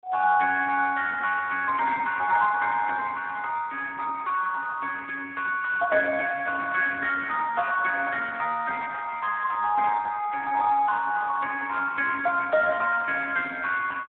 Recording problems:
phone line; 340 Hz to 3.3 kHz, Speex

